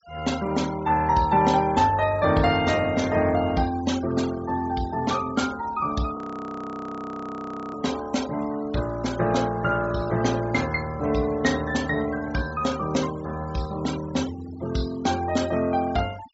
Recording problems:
low-pass filter; nothing above 7.6 kHz
denoising artefacts; signal-to-artefact ratio 17 dB
frozen audio; at 6 s for 1.5 s

